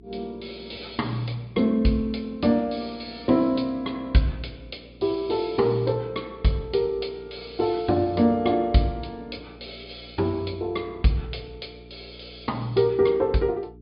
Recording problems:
low-pass filter; nothing above 5 kHz
mains hum; 60 Hz, harmonics up to 420 Hz, SNR 24 dB

